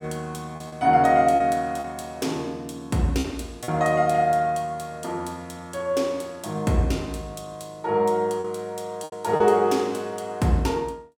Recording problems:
lost packets; 4% of the sound replaced, filled with repeated pitch periods

